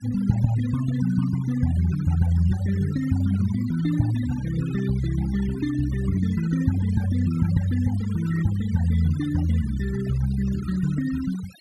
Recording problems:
noise reduction artefacts; signal-to-artefact ratio 16 dB

